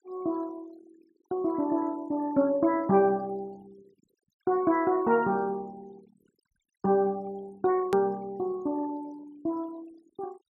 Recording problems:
noise reduction artefacts; signal-to-artefact ratio 26 dB
click at an edit; at 8 s

